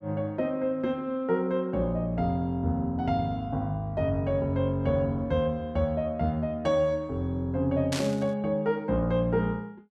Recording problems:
static burst; at 8 s; peak -1 dB vs average level

